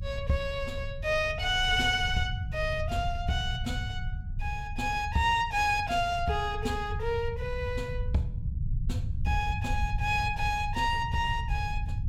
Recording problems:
rumble; below 100 Hz, SNR 6 dB

